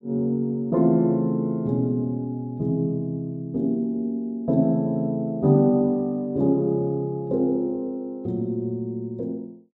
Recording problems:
none

